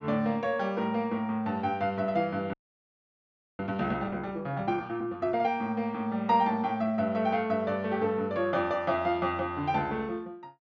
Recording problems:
treble cut off; nothing above 7.5 kHz
audio freezing; at 2.5 s for 1 s

